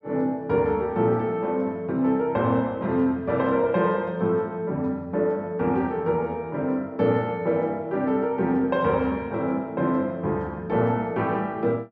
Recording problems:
none

